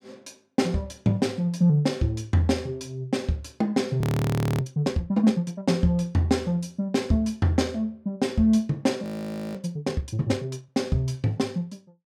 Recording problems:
audio freezing; at 4 s for 0.5 s and at 9 s for 0.5 s

